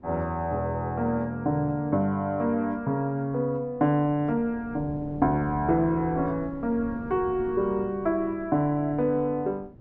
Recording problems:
wind noise; below 310 Hz, SNR 17 dB

